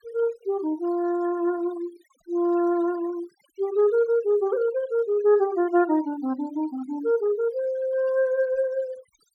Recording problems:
denoising artefacts; signal-to-artefact ratio 23 dB

